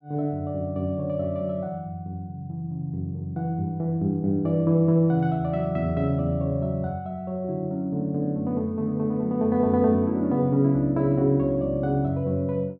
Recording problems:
none

